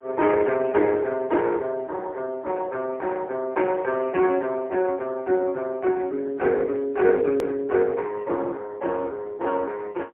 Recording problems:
telephone audio; 280 Hz to 3.4 kHz, AMR-NB, then MP3
click at an edit; at 7.5 s

